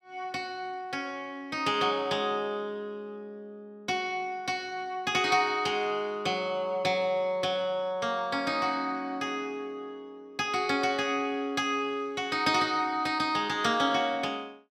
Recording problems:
none

